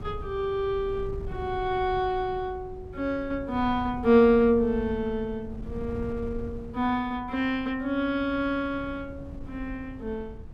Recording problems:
wind noise; below 130 Hz, SNR 14 dB

